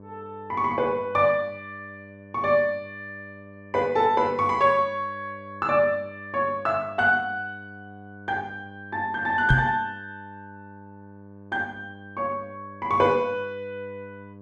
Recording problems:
hum; 50 Hz, harmonics up to 1.1 kHz, SNR 21 dB
knock on the microphone; at 9.5 s; peak +7 dB vs average level

